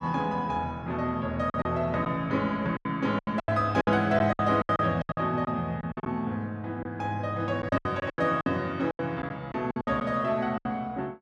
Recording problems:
packet loss; 12% of the sound replaced, filled with silence

